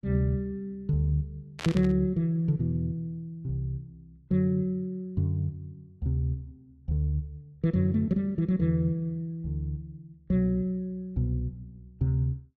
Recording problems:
burst of static; at 1.5 s; peak -1 dB vs average level

